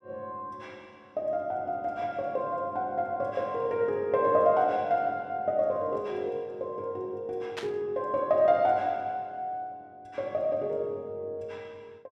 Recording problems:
burst of static; at 7.5 s; peak -3 dB vs average level

